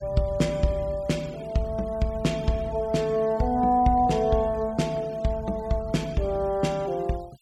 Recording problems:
denoising artefacts; signal-to-artefact ratio 25 dB

